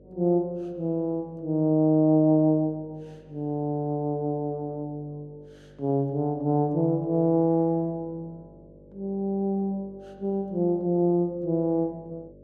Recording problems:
hum; 50 Hz, harmonics up to 600 Hz, SNR 27 dB

